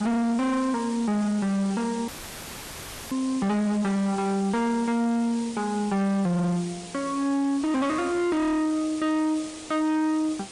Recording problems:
lossy codec; MP3, log-spectral distance 5 dB, nothing above 10.1 kHz
distorted audio; hard clipping, uneven, signal-to-distortion ratio 8 dB
hiss; SNR 16 dB
dropout; at 2 s for 1 s; filled with static

